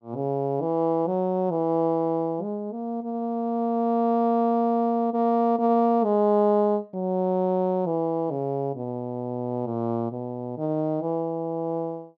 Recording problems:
none

